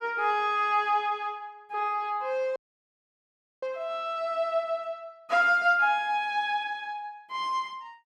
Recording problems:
audio cutting out; at 2.5 s for 1 s

